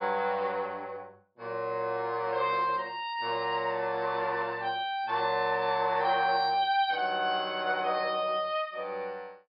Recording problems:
low-pass filter; nothing above 5.5 kHz

